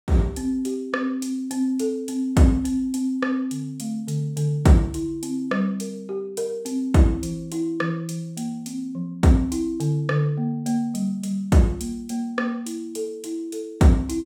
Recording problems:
none

